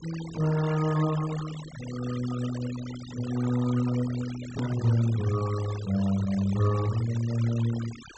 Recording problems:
treble cut off; nothing above 8 kHz
noise reduction artefacts; signal-to-artefact ratio 14 dB
edit click; at 4.5 s

